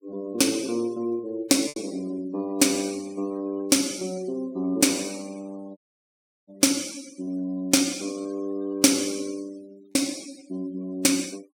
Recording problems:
noise reduction artefacts; signal-to-artefact ratio 22 dB
lost packets; 1.6% of the sound replaced, filled with repeated pitch periods
audio cutting out; at 6 s for 0.5 s

